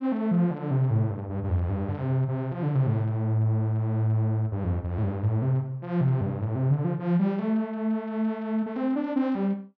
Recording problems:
none

